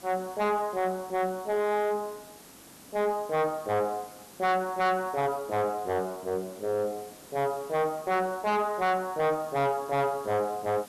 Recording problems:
distorted audio; soft clipping, signal-to-distortion ratio 5 dB
background hiss; slope -4 dB per octave, SNR 20 dB

